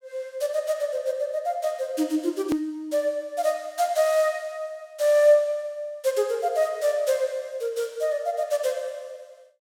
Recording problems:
hard cut with a click; at 2.5 s

